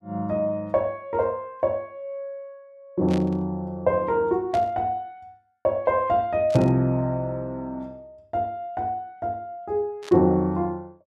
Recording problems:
burst of static; 4 times, first at 3 s; peak -8 dB vs average level

